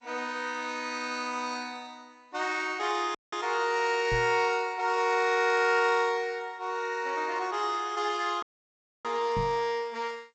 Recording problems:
lossy compression; MP2, then G.722, log-spectral distance 4 dB, nothing above 7.6 kHz
audio cutting out; at 3 s and at 8.5 s for 0.5 s
microphone bump; at 4 s and at 9.5 s; peak -3 dB vs average level

